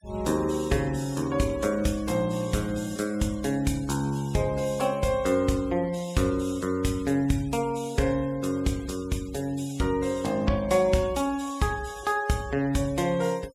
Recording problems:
denoising artefacts; signal-to-artefact ratio 21 dB

